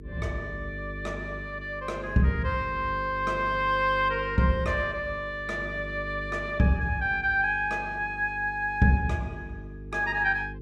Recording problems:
hum; 50 Hz, harmonics up to 450 Hz, SNR 14 dB

